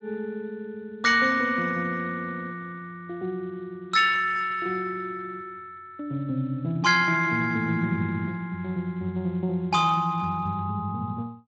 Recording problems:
lossy compression; Speex, log-spectral distance 3 dB

